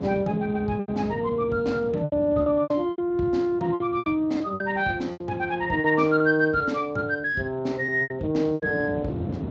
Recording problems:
lossy codec; Speex, log-spectral distance 2 dB
wind on the microphone; below 340 Hz, SNR 13 dB
packet loss; 10% of the sound replaced, filled with repeated pitch periods

